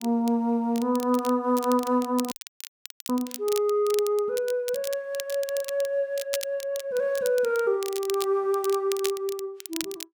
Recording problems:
crackle; vinyl, SNR 12 dB
dropout; at 2.5 s for 1 s

